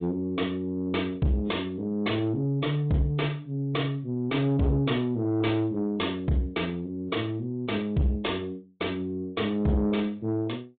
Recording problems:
low-pass filter; nothing above 3.8 kHz
codec artefacts; AAC, log-spectral distance 2 dB
distorted audio; soft clipping, signal-to-distortion ratio 11 dB

